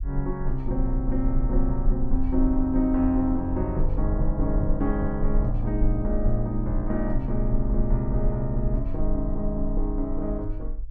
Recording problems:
rumble; below 42 Hz, strongest tone 22 Hz, SNR 3 dB

